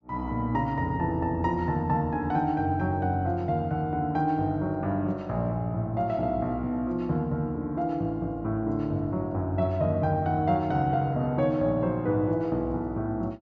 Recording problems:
low-pass filter; nothing above 8 kHz

